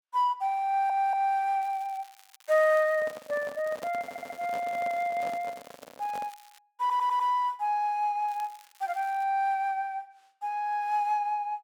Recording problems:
audio stuttering; at 0.5 s, at 4 s and at 7 s
crackling; from 1.5 to 6.5 s and at 8.5 s; loose cable, SNR 26 dB
microphone handling noise; from 3 to 6.5 s; peak -8 dB vs average level

